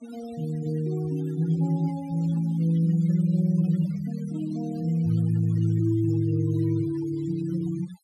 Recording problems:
noise reduction artefacts; signal-to-artefact ratio 22 dB

